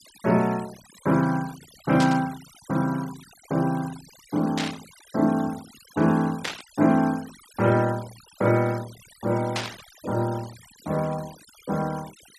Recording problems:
denoising artefacts; signal-to-artefact ratio 20 dB
burst of static; 4 times, first at 2 s; peak 0 dB vs average level

